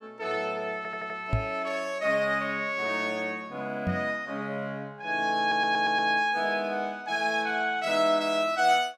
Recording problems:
stutter; at 1 s and at 5.5 s
microphone bump; at 1.5 s and at 4 s; peak +4 dB vs average level

